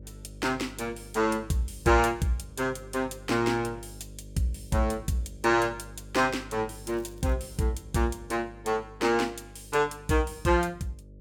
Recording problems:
electrical hum; 50 Hz, harmonics up to 600 Hz, SNR 19 dB
crackle; at 7 s; loose cable, SNR 28 dB

